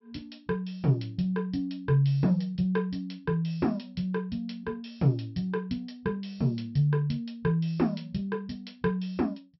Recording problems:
low-pass filter; nothing above 5.5 kHz

